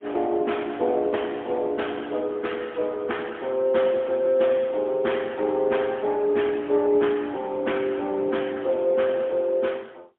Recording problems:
phone line; 260 Hz to 3.4 kHz, AMR-NB, then MP3

